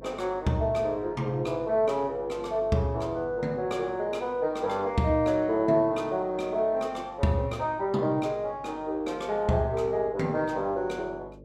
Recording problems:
mains hum; 50 Hz, harmonics up to 600 Hz, SNR 22 dB

